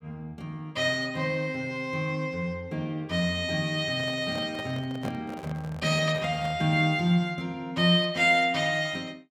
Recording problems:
handling noise; from 4 to 6.5 s; peak -8 dB vs average level

